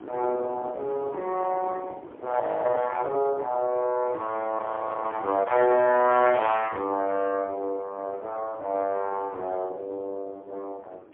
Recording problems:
telephone audio; 260 Hz to 2.8 kHz, AMR-NB, then MP3
wind noise; below 570 Hz, SNR 19 dB
audio freezing; at 2.5 s and at 4.5 s

